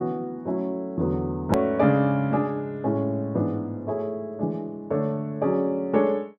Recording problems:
edit click; at 1.5 s

